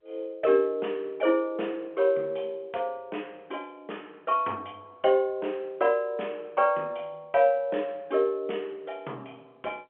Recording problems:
telephone audio; 220 Hz to 3.3 kHz, G.711

